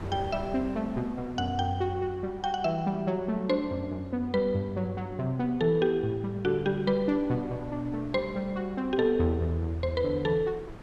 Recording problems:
wind on the microphone; below 500 Hz, SNR 18 dB

